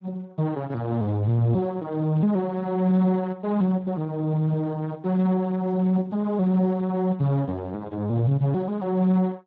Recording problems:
lossy codec; Speex, log-spectral distance 2 dB

